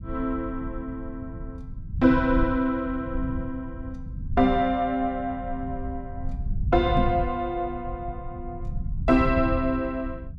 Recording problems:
low-frequency rumble; below 110 Hz, SNR 8 dB
knock on the microphone; at 7 s; peak +2 dB vs average level

